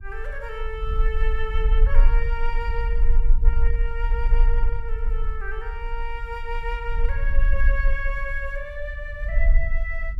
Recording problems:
low-frequency rumble; below 40 Hz, strongest tone 26 Hz, SNR -7 dB

